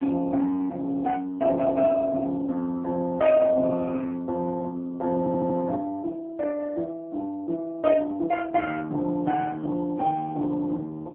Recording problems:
telephone audio; 190 Hz to 2.2 kHz, AMR-NB
stutter; at 5 s

